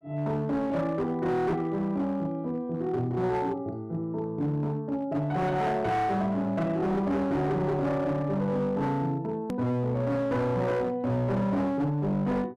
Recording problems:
distortion; hard clipping, signal-to-distortion ratio 10 dB
hard cut with a click; at 9.5 s

